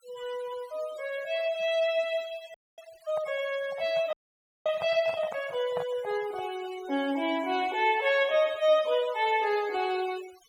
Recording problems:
noise reduction artefacts; signal-to-artefact ratio 18 dB
audio freezing; at 2.5 s and at 4 s for 0.5 s
handling noise; from 3 to 6.5 s; peak -4 dB vs average level

